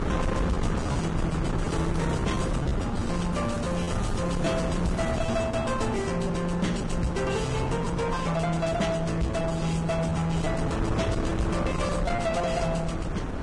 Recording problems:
lossy codec; Vorbis, log-spectral distance 3 dB
distorted audio; soft clipping, signal-to-distortion ratio 10 dB
wind noise; below 470 Hz, SNR 3 dB
lost packets; 6% of the sound replaced, filled with repeated pitch periods
crackling; from 1.5 to 2.5 s and from 3.5 to 5 s; loose cable, SNR 20 dB

